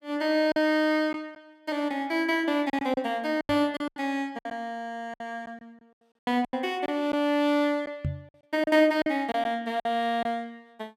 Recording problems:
lost packets; 8% of the sound replaced, filled with silence
knock on the microphone; at 3.5 s and at 8 s; peak +1 dB vs average level

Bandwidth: 16 kHz